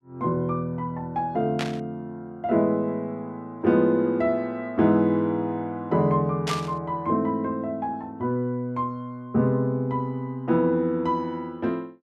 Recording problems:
static burst; at 1.5 s and at 6.5 s; peak -1 dB vs average level

